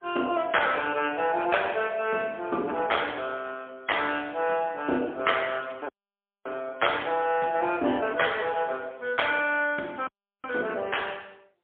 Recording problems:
phone line; 220 Hz to 3.4 kHz, AMR-NB, then MP3
dropout; at 6 s for 0.5 s and at 10 s

